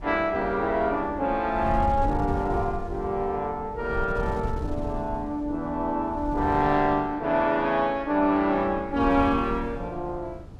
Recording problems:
wind on the microphone; below 120 Hz, SNR 11 dB

